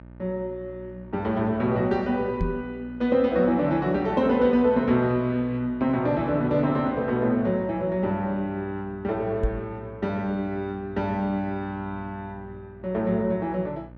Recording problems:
electrical hum; 60 Hz, harmonics up to 1.5 kHz, SNR 20 dB
knock on the microphone; at 2.5 s and at 9.5 s; peak +2 dB vs average level

